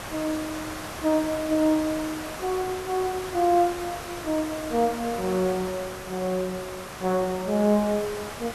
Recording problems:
background hiss; SNR 10 dB

